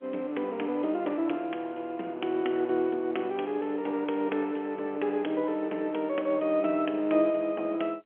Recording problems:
phone line; 260 Hz to 3.3 kHz, G.711

